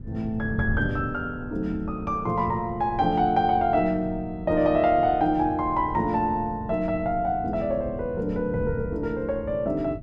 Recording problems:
wind on the microphone; below 150 Hz, SNR 12 dB

